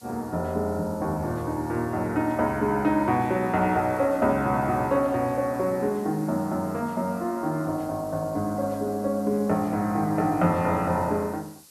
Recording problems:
background hiss; SNR 24 dB

